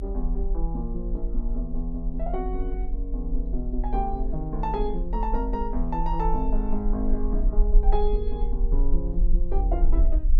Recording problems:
low-frequency rumble; below 42 Hz, SNR -3 dB

